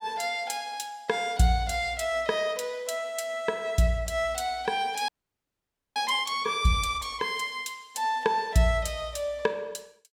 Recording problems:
frozen audio; at 5 s for 1 s

